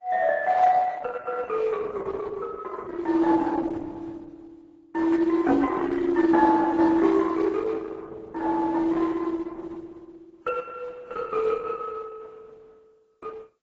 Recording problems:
codec artefacts; Opus, then AAC, log-spectral distance 4 dB, nothing above 7.6 kHz

